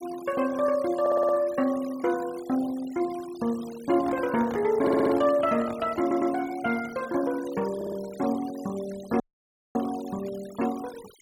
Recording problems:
denoising artefacts; signal-to-artefact ratio 19 dB
audio stuttering; 4 times, first at 1 s
microphone handling noise; from 4 to 6.5 s; peak -7 dB vs average level
audio cutting out; at 9 s for 0.5 s

